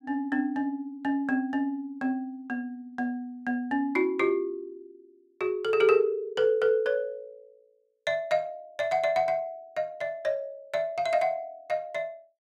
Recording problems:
none

